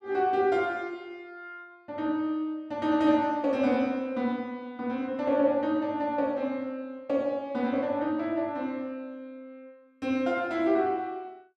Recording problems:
none

